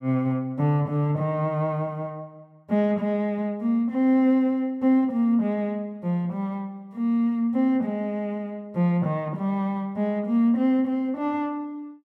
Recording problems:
none

